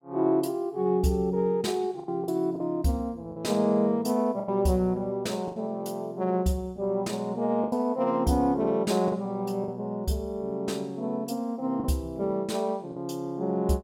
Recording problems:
packet loss; 4% of the sound replaced, filled with the last packet

